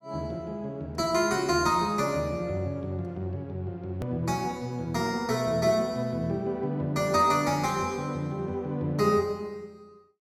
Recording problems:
click at an edit; at 4 s

